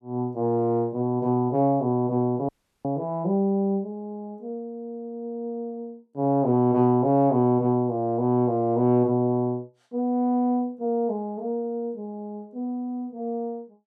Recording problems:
dropout; at 2.5 s

